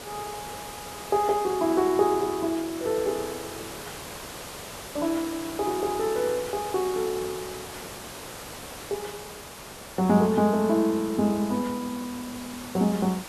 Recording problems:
hiss; slope -3 dB per octave, SNR 12 dB

